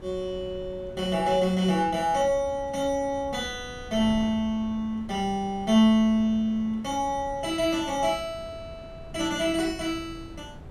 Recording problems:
wind on the microphone; below 270 Hz, SNR 19 dB

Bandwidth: 15 kHz